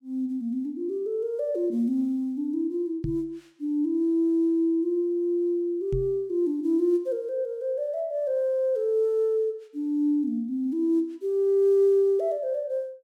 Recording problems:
microphone bump; at 3 s and at 6 s; peak -2 dB vs average level

